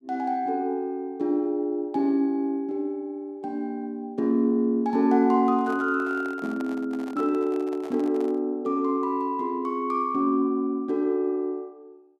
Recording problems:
handling noise; from 5.5 to 8.5 s; peak -11 dB vs average level

